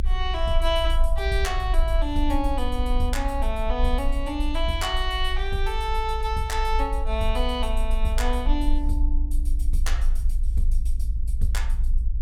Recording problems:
rumble; below 54 Hz, strongest tone 26 Hz, SNR -1 dB

